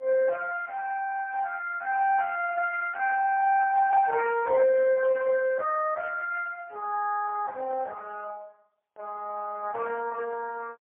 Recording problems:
phone line; 280 Hz to 2.8 kHz, AMR-NB, then MP3

